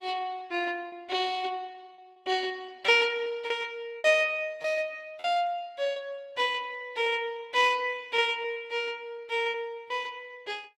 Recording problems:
codec artefacts; Opus, log-spectral distance 2 dB, nothing above 18.3 kHz
packet loss; 8% of the sound replaced, filled with repeated pitch periods

